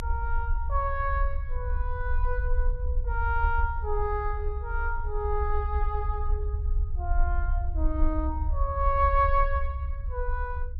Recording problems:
rumble; below 66 Hz, strongest tone 26 Hz, SNR 0 dB

